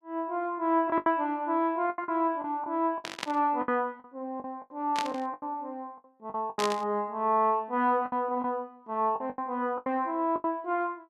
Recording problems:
lost packets; 11% of the sound replaced, filled with the last packet
burst of static; at 3 s, at 5 s and at 6.5 s; peak +1 dB vs average level

